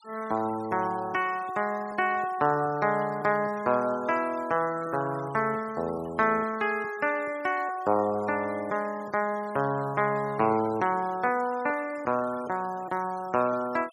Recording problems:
denoising artefacts; signal-to-artefact ratio 21 dB

